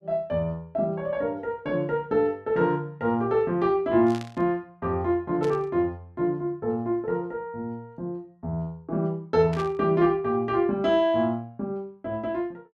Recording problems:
burst of static; at 4 s, at 5.5 s and at 9.5 s; peak -10 dB vs average level

